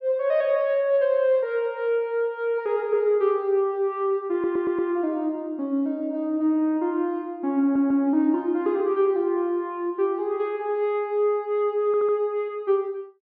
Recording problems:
treble cut off; nothing above 5.5 kHz
stutter; at 4.5 s, at 7.5 s and at 12 s

